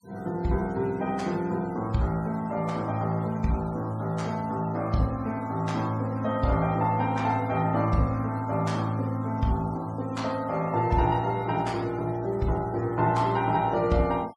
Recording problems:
denoising artefacts; signal-to-artefact ratio 25 dB

